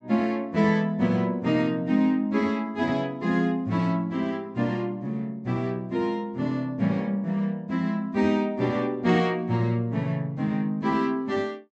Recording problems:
treble missing; nothing above 7.9 kHz

